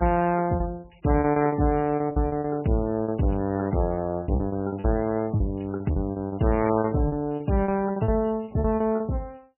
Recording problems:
lossy codec; MP3, log-spectral distance 4 dB, nothing above 2.8 kHz
packet loss; 13% of the sound replaced, filled with repeated pitch periods

